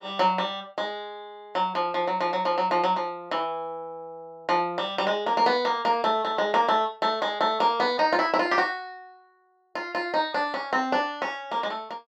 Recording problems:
none

